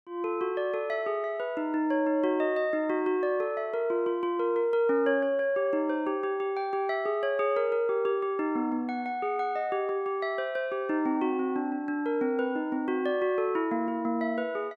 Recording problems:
none

